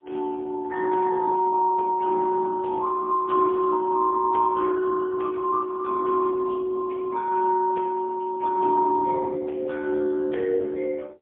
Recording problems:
telephone audio; 320 Hz to 2.1 kHz, AMR-NB, then MP3

